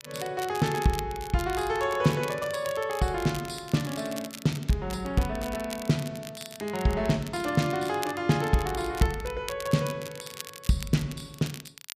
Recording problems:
crackling; vinyl, SNR 14 dB

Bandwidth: 14.5 kHz